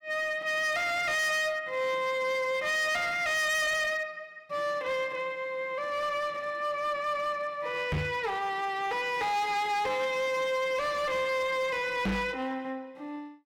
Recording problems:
distortion; hard clipping, signal-to-distortion ratio 7 dB
knock on the microphone; at 8 s and at 12 s; peak +2 dB vs average level

